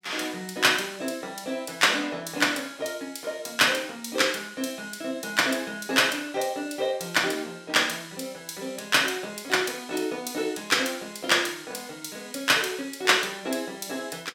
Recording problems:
none

